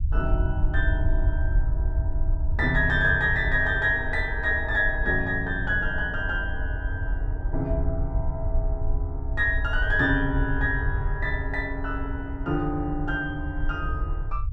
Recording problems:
rumble; below 74 Hz, SNR 4 dB

